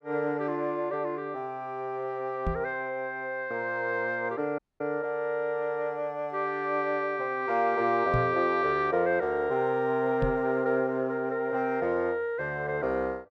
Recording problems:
microphone thump; at 2.5 s, at 8 s and at 10 s; peak +3 dB vs average level
dropout; at 4.5 s

